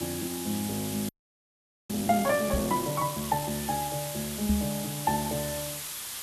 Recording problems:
background hiss; slope +2 dB per octave, SNR 5 dB
frozen audio; at 1 s for 1 s
microphone thump; at 2.5 s and at 4.5 s; peak +6 dB vs average level

